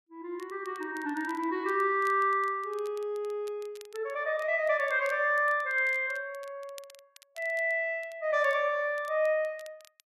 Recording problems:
crackle; vinyl, SNR 27 dB

